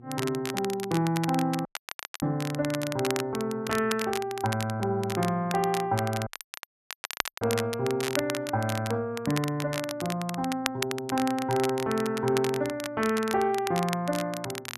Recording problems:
hum; 60 Hz, harmonics up to 840 Hz, SNR 22 dB
crackling; vinyl, SNR 8 dB
dropout; at 1.5 s for 0.5 s and at 6.5 s for 1 s

